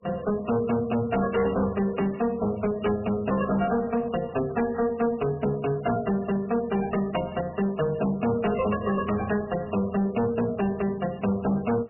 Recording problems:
lossy codec; MP3, log-spectral distance 4 dB, nothing above 2.8 kHz
distortion; hard clipping, signal-to-distortion ratio 10 dB

